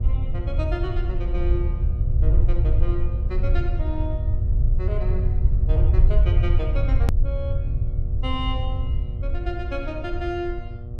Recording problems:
hum; 60 Hz, harmonics up to 1.2 kHz, SNR 11 dB
rumble; below 78 Hz, SNR -9 dB
hard cut with a click; at 7 s

